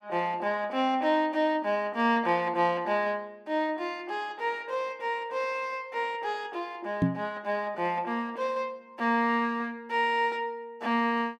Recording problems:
microphone bump; at 7 s; peak +7 dB vs average level

